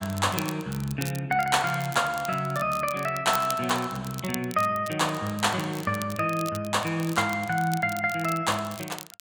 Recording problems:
crackling; vinyl, SNR 14 dB

